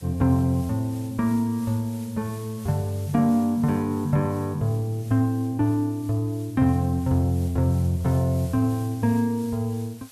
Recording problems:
hiss; slope 0 dB per octave, SNR 23 dB

